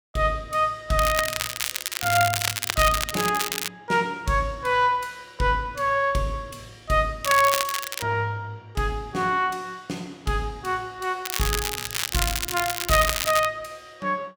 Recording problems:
crackling; from 1 to 3.5 s, at 7 s and from 11 to 13 s; loose cable, SNR 2 dB

